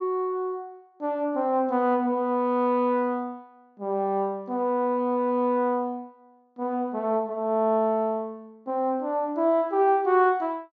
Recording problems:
treble missing; nothing above 8 kHz

